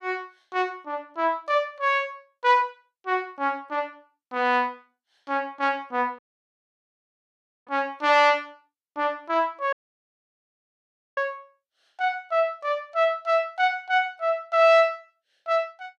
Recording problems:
audio cutting out; at 6 s for 1.5 s and at 9.5 s for 1.5 s

